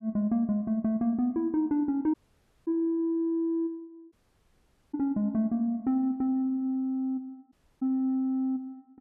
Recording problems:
audio cutting out; at 2 s for 0.5 s, at 4 s for 1 s and at 7.5 s

